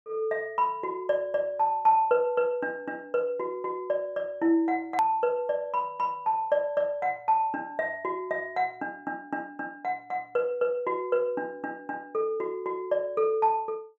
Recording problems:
click at an edit; at 5 s

